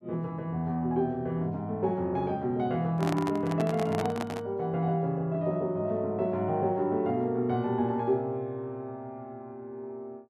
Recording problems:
microphone handling noise; from 3 to 4.5 s; peak +1 dB vs average level

